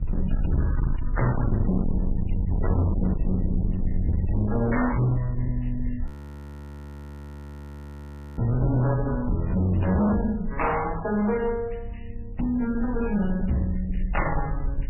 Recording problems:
codec artefacts; MP3, then MP3, log-spectral distance 4 dB, nothing above 15.1 kHz
distorted audio; hard clipping, signal-to-distortion ratio 7 dB
hum; 50 Hz, harmonics up to 700 Hz, SNR 21 dB
rumble; below 84 Hz, SNR 6 dB
frozen audio; at 6 s for 2.5 s

